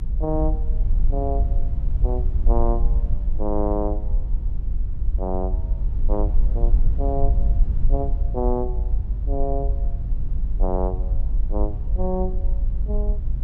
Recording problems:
rumble; below 50 Hz, SNR -4 dB

